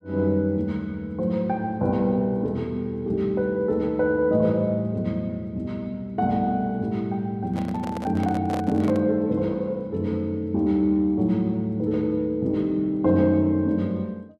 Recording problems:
handling noise; from 7.5 to 9 s; peak -4 dB vs average level

